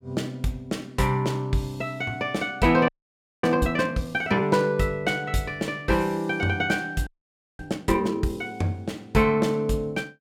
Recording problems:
frozen audio; at 3 s for 0.5 s and at 7 s for 0.5 s

